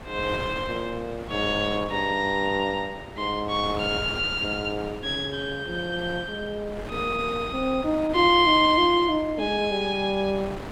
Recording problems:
wind on the microphone; below 1.1 kHz, SNR 14 dB

